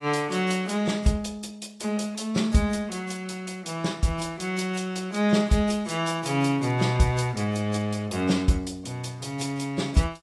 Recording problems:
codec artefacts; AAC, log-spectral distance 3 dB, nothing above 11.3 kHz

